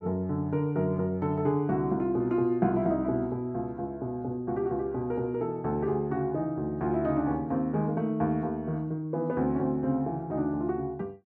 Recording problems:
none

